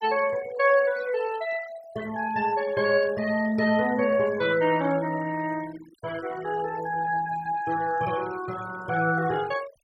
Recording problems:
denoising artefacts; signal-to-artefact ratio 17 dB

